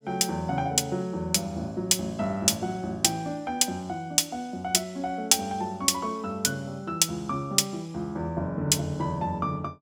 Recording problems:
none

